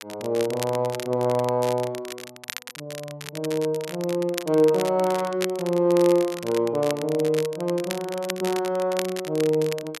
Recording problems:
crackle; vinyl, SNR 13 dB

